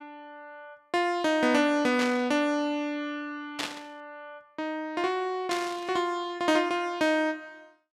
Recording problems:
burst of static; at 2 s, at 3.5 s and at 5.5 s; peak 0 dB vs average level

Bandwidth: 14.5 kHz